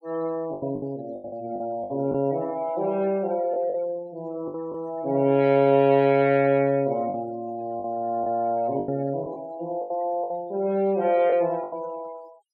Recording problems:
noise reduction artefacts; signal-to-artefact ratio 26 dB
packet loss; 8% of the sound replaced, filled with the last packet

